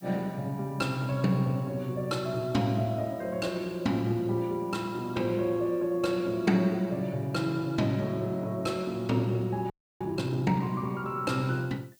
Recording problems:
hiss; SNR 29 dB
audio freezing; at 9.5 s

